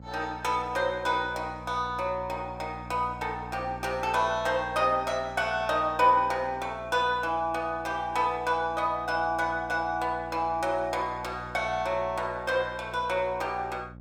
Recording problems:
electrical hum; 60 Hz, harmonics up to 840 Hz, SNR 17 dB

